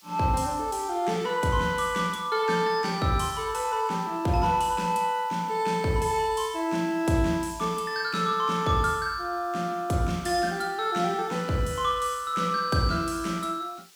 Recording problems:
background hiss; SNR 26 dB

